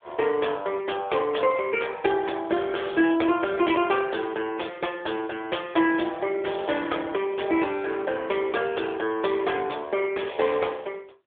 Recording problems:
phone line; 280 Hz to 3.5 kHz, AMR-NB

